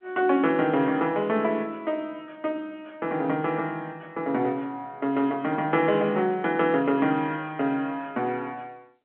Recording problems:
phone line; 170 Hz to 3.4 kHz, G.711

